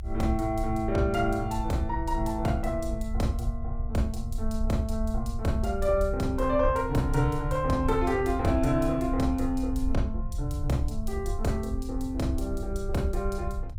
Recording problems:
low-frequency rumble; below 70 Hz, SNR 6 dB

